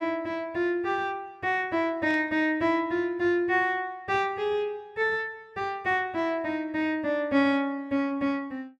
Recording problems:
static burst; at 2 s; peak -14 dB vs average level

